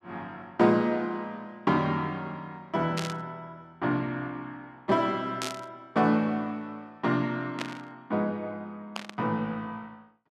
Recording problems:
burst of static; 4 times, first at 3 s; peak +1 dB vs average level

